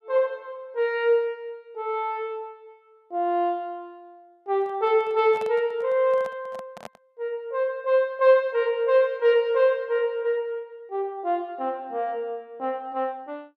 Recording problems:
handling noise; from 4.5 to 7 s; peak -10 dB vs average level

